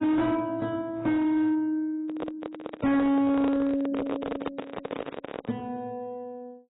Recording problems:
lossy codec; AAC, log-spectral distance 2 dB, nothing above 3.8 kHz
distortion; hard clipping, signal-to-distortion ratio 10 dB
handling noise; from 2 to 5.5 s; peak 0 dB vs average level

